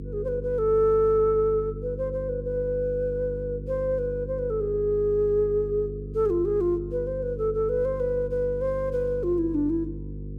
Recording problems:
hum; 50 Hz, harmonics up to 500 Hz, SNR 11 dB

